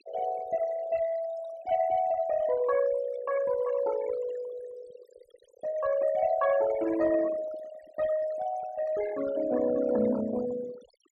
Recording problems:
noise reduction artefacts; signal-to-artefact ratio 13 dB

